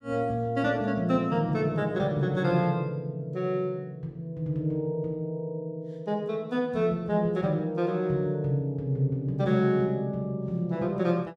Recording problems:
none

